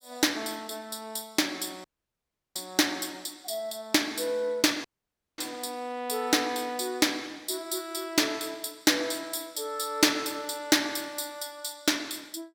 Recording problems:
dropout; at 2 s for 0.5 s and at 5 s for 0.5 s

